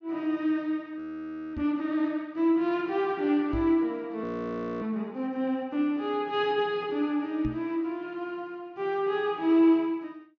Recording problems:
low-pass filter; nothing above 6.6 kHz
frozen audio; at 1 s for 0.5 s and at 4 s for 0.5 s
microphone thump; at 1.5 s, at 3.5 s and at 7.5 s; peak -3 dB vs average level

